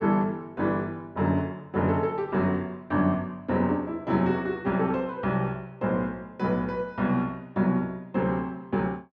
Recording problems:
none

